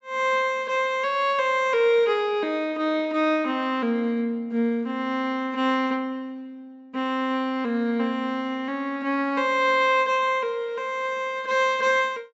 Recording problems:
treble missing; nothing above 7.7 kHz

